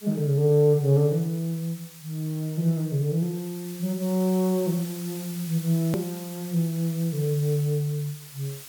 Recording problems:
hiss; slope +2 dB per octave, SNR 16 dB
hard cut with a click; at 6 s

